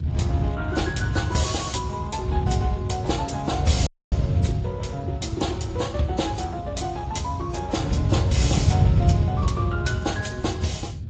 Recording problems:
codec artefacts; Speex, then AAC, log-spectral distance 3 dB, nothing above 7.6 kHz
wind on the microphone; below 140 Hz, SNR -2 dB
audio cutting out; at 4 s

